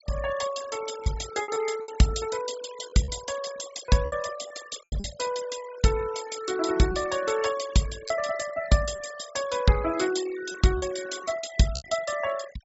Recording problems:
treble cut off; nothing above 8 kHz
denoising artefacts; signal-to-artefact ratio 14 dB
packet loss; 5% of the sound replaced, filled with repeated pitch periods

